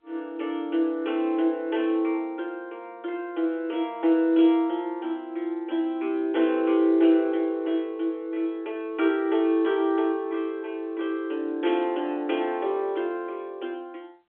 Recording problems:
telephone audio; 260 Hz to 3.5 kHz, G.711

